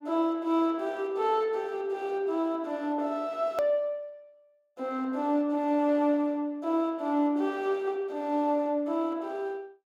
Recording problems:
click at an edit; at 3.5 s

